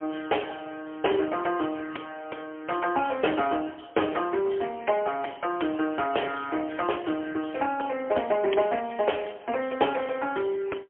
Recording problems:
telephone audio; 280 Hz to 3.2 kHz, AMR-NB, then MP3

